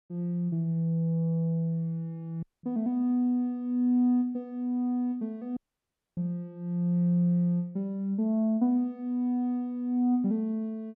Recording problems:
dropout; at 2.5 s and at 5.5 s for 0.5 s

